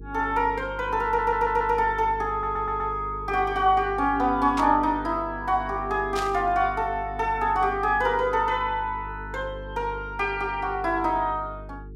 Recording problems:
mains hum; 50 Hz, harmonics up to 450 Hz, SNR 15 dB
audio stuttering; at 1 s and at 2.5 s
static burst; at 4.5 s and at 6 s; peak -5 dB vs average level

